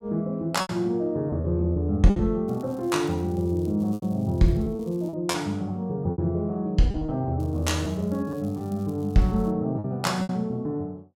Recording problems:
lost packets; 7% of the sound replaced, filled with repeated pitch periods
crackling; from 2.5 to 5 s and from 7.5 to 9.5 s; loose cable, SNR 29 dB

